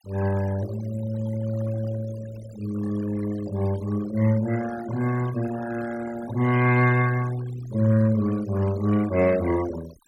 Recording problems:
denoising artefacts; signal-to-artefact ratio 16 dB

